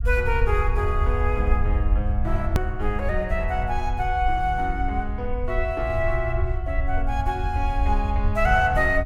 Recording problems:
low-frequency rumble; below 72 Hz, SNR 1 dB
hard cut with a click; at 2.5 s

